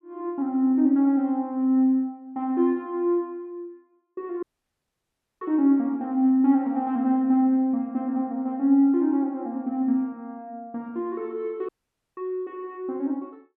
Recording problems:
dropout; at 4.5 s for 1 s and at 12 s

